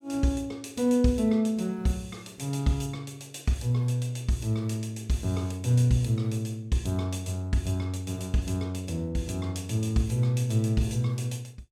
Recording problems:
none

